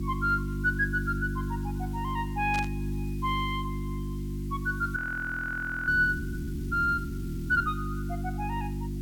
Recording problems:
electrical hum; 50 Hz, harmonics up to 350 Hz, SNR 4 dB
hiss; slope +2 dB per octave, SNR 23 dB
static burst; at 2.5 s; peak -5 dB vs average level
audio freezing; at 5 s for 1 s

